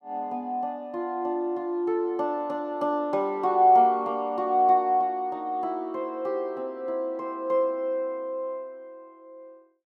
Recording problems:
none

